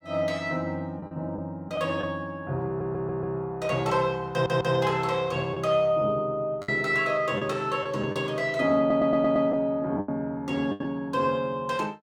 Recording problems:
lost packets; 5% of the sound replaced, filled with the last packet
stutter; at 2.5 s, at 4.5 s and at 9 s

